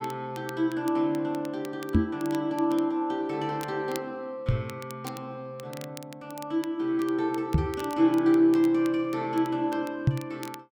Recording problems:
crackle; vinyl, SNR 21 dB
microphone thump; 4 times, first at 2 s; peak +9 dB vs average level

